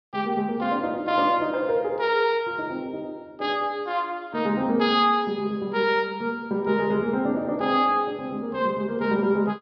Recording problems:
treble cut off; nothing above 5.5 kHz

